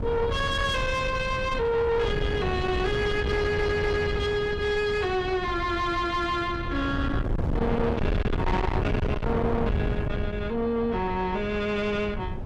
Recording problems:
distortion; soft clipping, signal-to-distortion ratio 7 dB
wind on the microphone; below 400 Hz, SNR 4 dB
stutter; at 3.5 s

